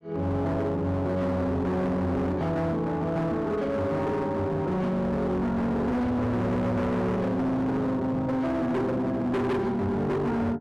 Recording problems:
distorted audio; hard clipping, signal-to-distortion ratio 7 dB

